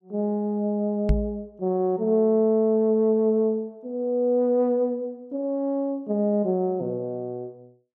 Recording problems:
microphone bump; at 1 s; peak +5 dB vs average level

